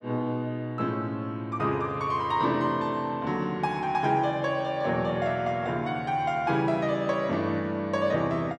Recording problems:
none

